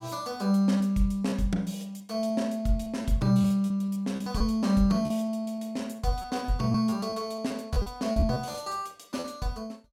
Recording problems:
lost packets; 9% of the sound replaced, filled with repeated pitch periods

